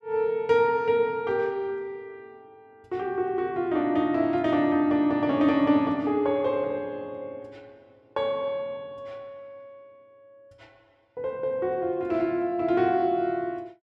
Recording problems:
none

